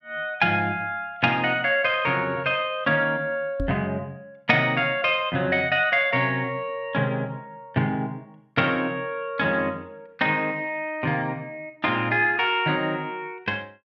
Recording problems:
microphone bump; at 3.5 s; peak -2 dB vs average level

